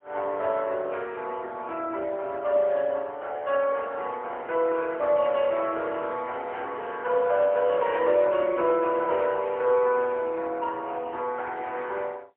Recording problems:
phone line; 340 Hz to 3.3 kHz, AMR-NB, then MP3

